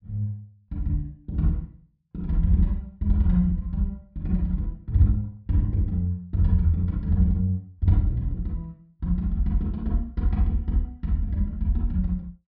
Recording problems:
treble cut off; nothing above 5.5 kHz

